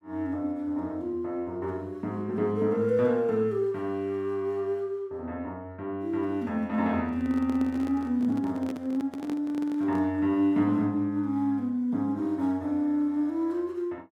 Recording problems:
handling noise; from 7 to 10 s; peak -5 dB vs average level

